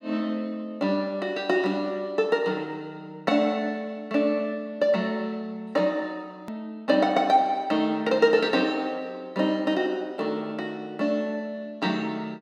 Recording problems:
click at an edit; at 6.5 s

